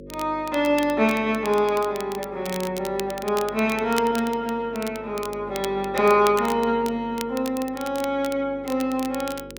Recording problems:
hum; 50 Hz, harmonics up to 550 Hz, SNR 18 dB
crackling; vinyl, SNR 15 dB

